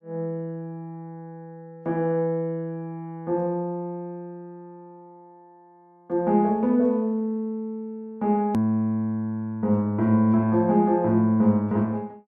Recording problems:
edit click; at 8.5 s

